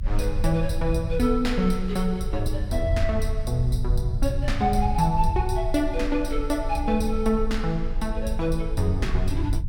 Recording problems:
rumble; below 58 Hz, strongest tone 22 Hz, SNR 4 dB

